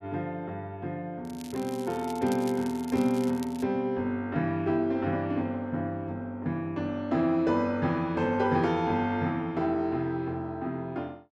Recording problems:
crackle; from 1 to 3.5 s; loose cable, SNR 19 dB

